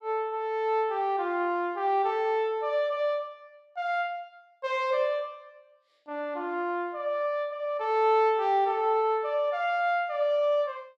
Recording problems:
none

